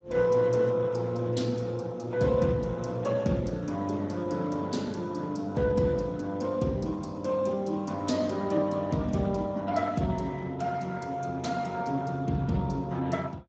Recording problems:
lossy compression; Speex, log-spectral distance 3 dB, nothing above 7.6 kHz

